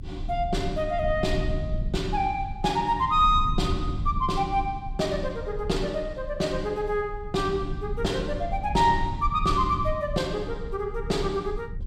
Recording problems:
low-frequency rumble; below 96 Hz, strongest tone 30 Hz, SNR 8 dB

